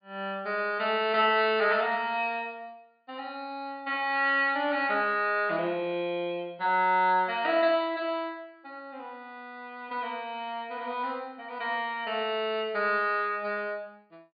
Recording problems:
low-pass filter; nothing above 4.8 kHz

